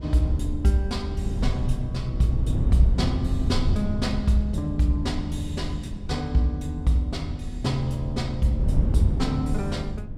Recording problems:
wind on the microphone; below 110 Hz, SNR 3 dB

